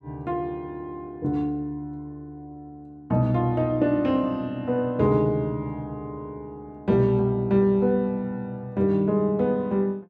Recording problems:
none

